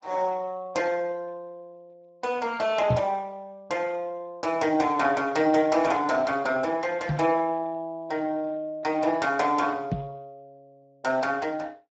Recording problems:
codec artefacts; Speex, log-spectral distance 3 dB, nothing above 7.6 kHz
knock on the microphone; at 3 s, at 7 s and at 10 s; peak +3 dB vs average level

